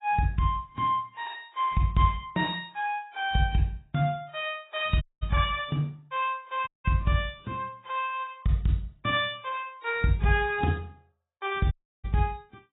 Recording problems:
codec artefacts; AAC, log-spectral distance 3 dB, nothing above 3.2 kHz
dropout; at 5 s, at 6.5 s and at 12 s

